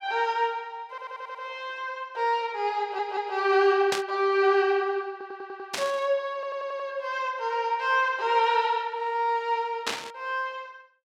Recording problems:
stutter; 4 times, first at 1 s
burst of static; at 4 s, at 5.5 s and at 10 s; peak +2 dB vs average level

